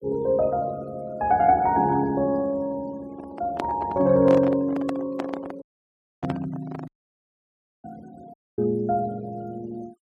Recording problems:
noise reduction artefacts; signal-to-artefact ratio 26 dB
microphone handling noise; from 3 to 7 s; peak -1 dB vs average level
audio cutting out; at 5.5 s for 0.5 s, at 7 s for 1 s and at 8.5 s

